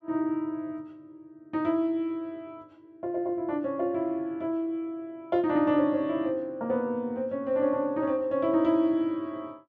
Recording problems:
none

